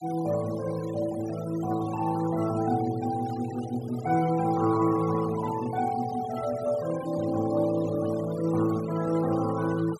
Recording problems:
noise reduction artefacts; signal-to-artefact ratio 16 dB

